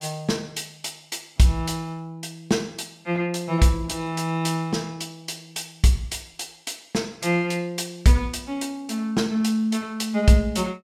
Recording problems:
none

